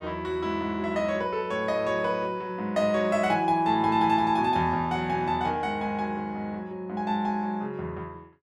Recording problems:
none

